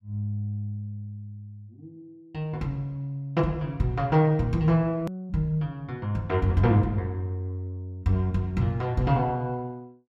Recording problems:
click at an edit; at 5 s

